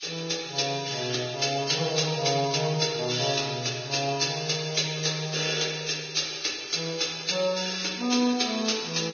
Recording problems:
lossy compression; Vorbis, log-spectral distance 9 dB, nothing above 6.5 kHz

